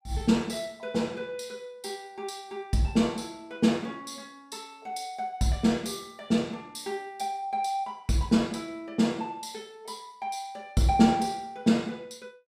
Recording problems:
none

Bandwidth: 15 kHz